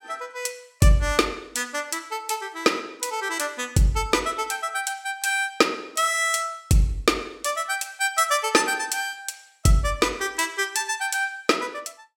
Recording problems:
none

